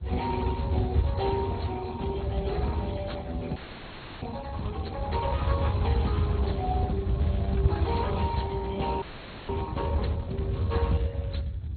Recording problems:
treble cut off; nothing above 4.3 kHz
lossy codec; Speex, log-spectral distance 3 dB
low-frequency rumble; below 110 Hz, SNR -1 dB
wind on the microphone; below 450 Hz, SNR 20 dB
audio freezing; at 3.5 s for 0.5 s and at 9 s

